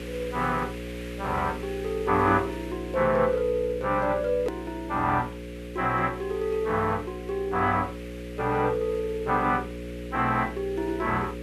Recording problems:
hum; 60 Hz, harmonics up to 540 Hz, SNR 10 dB
hiss; SNR 19 dB
edit click; at 4.5 s

